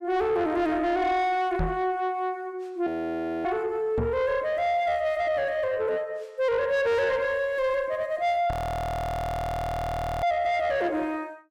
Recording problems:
distorted audio; soft clipping, signal-to-distortion ratio 10 dB
knock on the microphone; at 1.5 s, at 4 s and at 8.5 s; peak +2 dB vs average level
frozen audio; at 3 s for 0.5 s and at 8.5 s for 1.5 s

